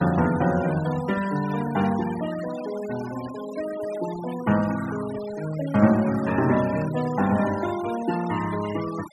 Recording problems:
noise reduction artefacts; signal-to-artefact ratio 14 dB

